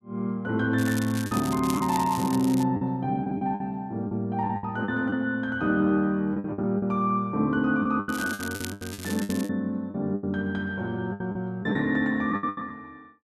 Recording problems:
lost packets; 11% of the sound replaced, filled with the last packet
crackling; at 1 s, from 1.5 to 2.5 s and from 8 to 9.5 s; loose cable, SNR 12 dB

